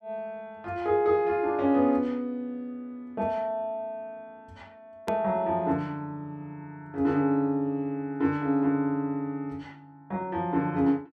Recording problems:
click at an edit; at 5 s

